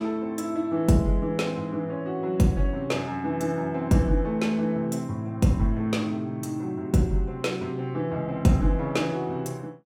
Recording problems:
none

